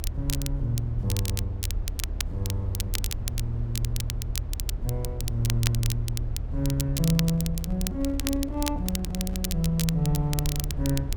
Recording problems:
rumble; below 76 Hz, SNR 4 dB
crackling; vinyl, SNR 6 dB
handling noise; from 7 to 9.5 s; peak -12 dB vs average level

